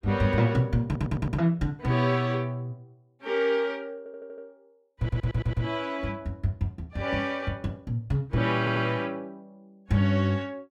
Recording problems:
audio stuttering; 4 times, first at 1 s

